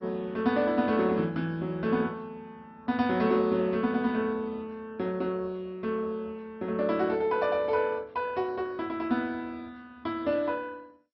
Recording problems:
lossy compression; MP2, log-spectral distance 2 dB, nothing above 5.2 kHz

